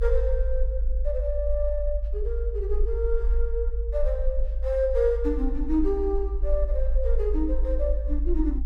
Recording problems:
rumble; below 52 Hz, SNR 0 dB

